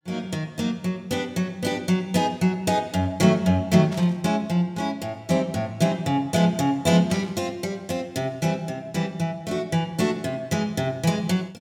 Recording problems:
static burst; at 4 s and at 7 s; peak -11 dB vs average level

